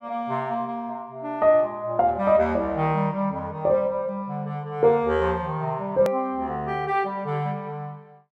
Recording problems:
edit click; at 6 s

